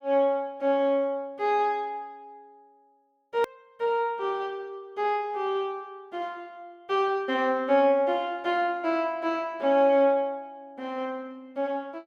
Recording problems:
edit click; at 3.5 s

